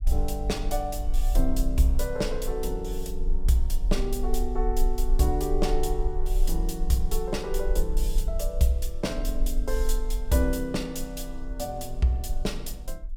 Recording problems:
low-frequency rumble; below 40 Hz, strongest tone 24 Hz, SNR 2 dB

